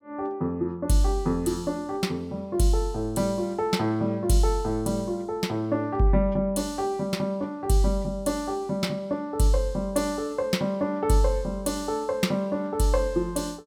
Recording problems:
none

